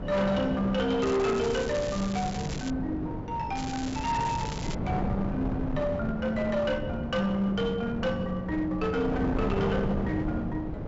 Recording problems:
low-pass filter; nothing above 8 kHz
distortion; hard clipping, uneven, signal-to-distortion ratio 10 dB
wind on the microphone; below 390 Hz, SNR 5 dB
crackle; from 1 to 2.5 s and from 3.5 to 5 s; loose cable, SNR 12 dB

